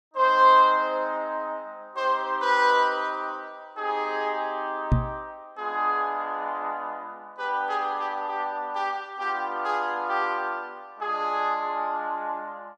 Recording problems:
microphone bump; at 5 s; peak +8 dB vs average level

